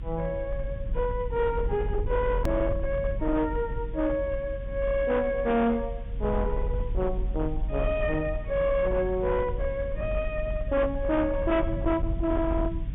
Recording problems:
treble missing; nothing above 3.6 kHz
distorted audio; hard clipping, signal-to-distortion ratio 12 dB
hiss; SNR 30 dB
rumble; below 76 Hz, strongest tone 44 Hz, SNR 5 dB
click at an edit; at 2.5 s

